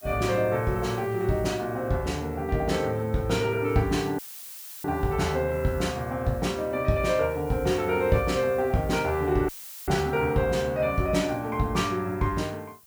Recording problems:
background hiss; slope 0 dB per octave, SNR 24 dB
audio cutting out; at 4 s for 0.5 s and at 9.5 s; filled with static

